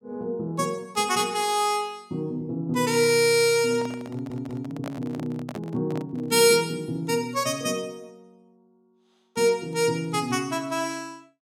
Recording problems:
microphone handling noise; from 3.5 to 6.5 s; peak -6 dB vs average level
audio stuttering; at 4 s

